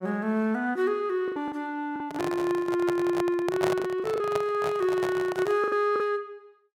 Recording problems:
packet loss; 7% of the sound replaced, filled with the last packet
microphone handling noise; from 2 to 5.5 s; peak +2 dB vs average level

